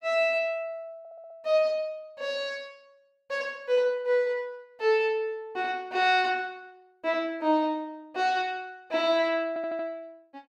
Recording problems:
stutter; at 1 s and at 9.5 s

